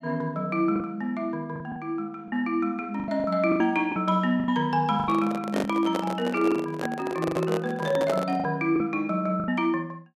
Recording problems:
lost packets; 9% of the sound replaced, filled with the last packet
microphone handling noise; from 5 to 8.5 s; peak +1 dB vs average level

